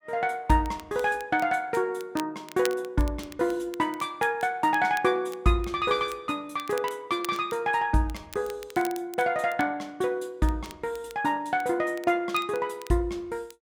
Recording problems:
crackling; vinyl, SNR 19 dB

